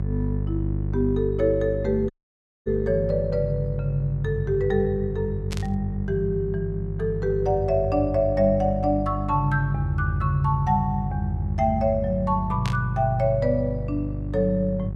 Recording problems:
hum; 50 Hz, harmonics up to 550 Hz, SNR 5 dB
dropout; at 2 s for 0.5 s
burst of static; at 5.5 s and at 13 s; peak -5 dB vs average level

